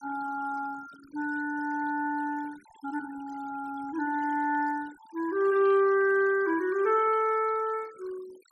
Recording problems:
denoising artefacts; signal-to-artefact ratio 24 dB

